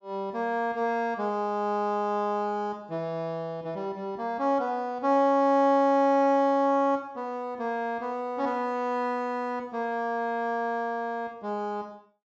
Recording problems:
treble cut off; nothing above 8 kHz

